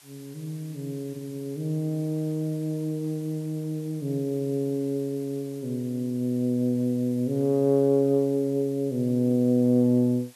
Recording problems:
hiss; SNR 25 dB

